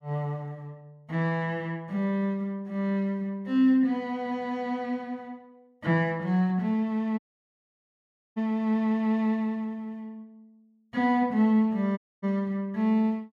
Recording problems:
audio cutting out; at 7 s for 1 s and at 12 s

